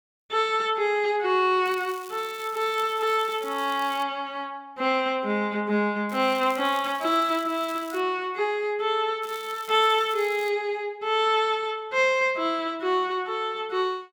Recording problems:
crackling; from 1.5 to 4 s, from 6 to 8 s and from 9 to 10 s; loose cable, SNR 20 dB

